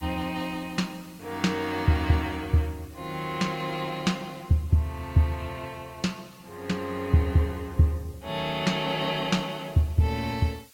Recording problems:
codec artefacts; Opus, log-spectral distance 4 dB, nothing above 16.6 kHz
hiss; slope +2 dB per octave, SNR 27 dB

